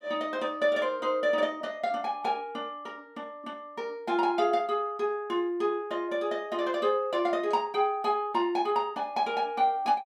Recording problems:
none

